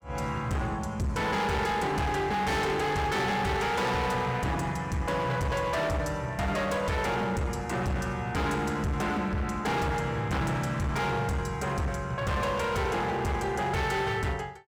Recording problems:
distortion; hard clipping, signal-to-distortion ratio 7 dB

